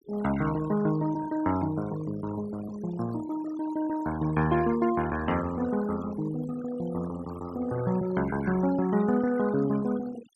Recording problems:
noise reduction artefacts; signal-to-artefact ratio 14 dB

